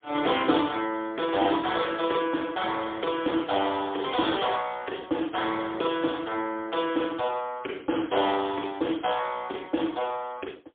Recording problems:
telephone audio; 240 Hz to 3.5 kHz, AMR-NB, then MP3

